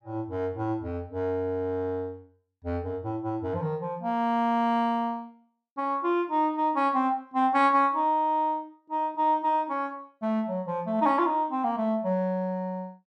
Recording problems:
none

